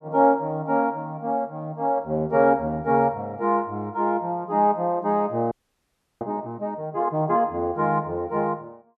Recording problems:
frozen audio; at 5.5 s for 0.5 s

